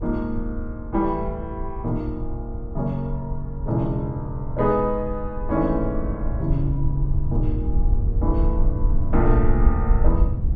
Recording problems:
low-frequency rumble; below 66 Hz, SNR 1 dB

